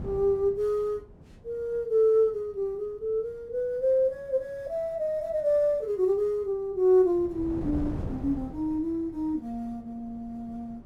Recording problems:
wind on the microphone; below 260 Hz, SNR 14 dB

